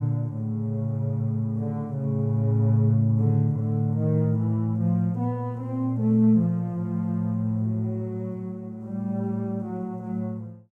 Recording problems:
none

